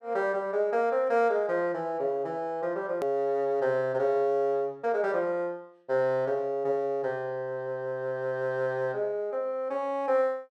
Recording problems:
edit click; at 3 s

